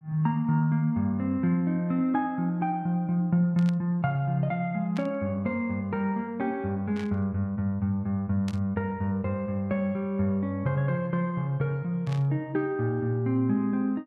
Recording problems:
burst of static; 5 times, first at 3.5 s; peak -10 dB vs average level

